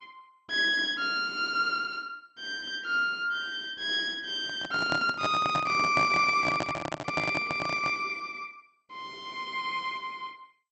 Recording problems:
lossy codec; MP2, log-spectral distance 3 dB
handling noise; from 4.5 to 8 s; peak +1 dB vs average level

